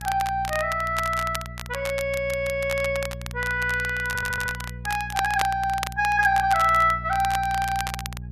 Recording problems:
hum; 60 Hz, harmonics up to 420 Hz, SNR 13 dB
crackling; vinyl, SNR 11 dB
stutter; at 2 s and at 4 s

